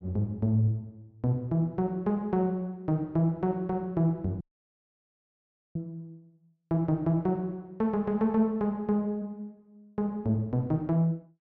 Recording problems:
audio cutting out; at 4.5 s for 1.5 s

